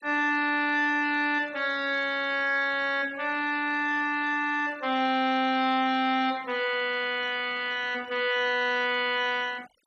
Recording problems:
noise reduction artefacts; signal-to-artefact ratio 20 dB

